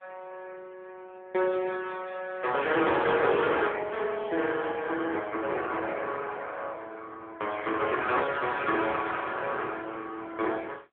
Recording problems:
telephone audio; 300 Hz to 3.5 kHz, AMR-NB

